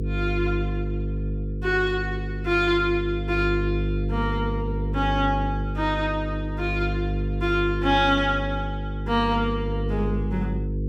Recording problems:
electrical hum; 50 Hz, harmonics up to 500 Hz, SNR 3 dB

